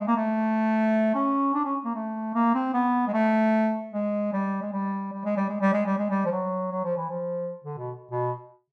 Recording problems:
none

